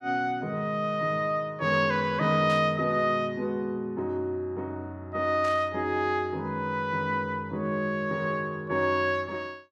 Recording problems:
burst of static; at 2.5 s and at 5.5 s; peak -10 dB vs average level

